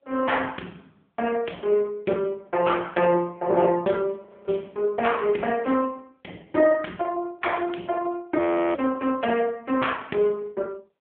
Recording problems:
phone line; 240 Hz to 3.4 kHz, AMR-NB
audio freezing; at 4.5 s and at 8.5 s

